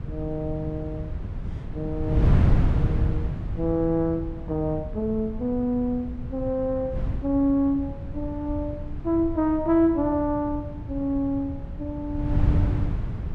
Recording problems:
wind on the microphone; below 140 Hz, SNR 3 dB

